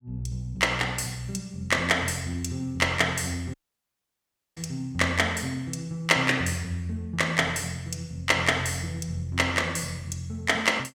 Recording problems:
dropout; at 3.5 s for 1 s

